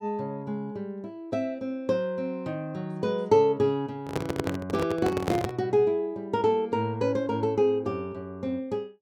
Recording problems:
handling noise; from 4 to 5.5 s; peak +2 dB vs average level

